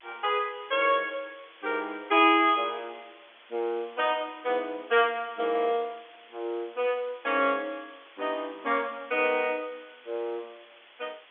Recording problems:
phone line; 240 Hz to 3.5 kHz, G.711
hiss; SNR 24 dB

